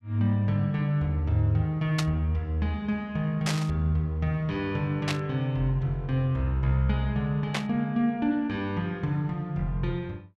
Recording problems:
burst of static; 4 times, first at 2 s; peak +2 dB vs average level

